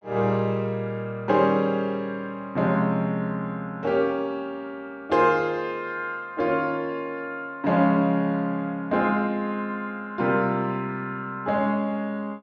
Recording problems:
none

